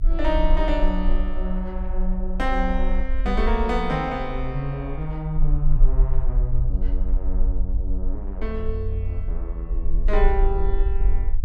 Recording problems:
rumble; below 44 Hz, strongest tone 24 Hz, SNR -2 dB

